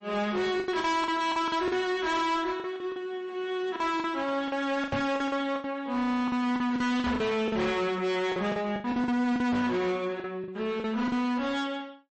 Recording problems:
lossy codec; MP3, log-spectral distance 2 dB, nothing above 8.2 kHz
distorted audio; hard clipping, uneven, signal-to-distortion ratio 7 dB
packet loss; 12% of the sound replaced, filled with the last packet
knock on the microphone; at 5 s, at 7 s and at 9.5 s; peak 0 dB vs average level

